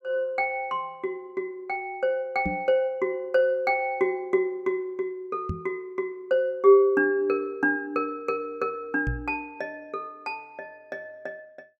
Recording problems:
knock on the microphone; at 2.5 s, at 5.5 s and at 9 s; peak 0 dB vs average level

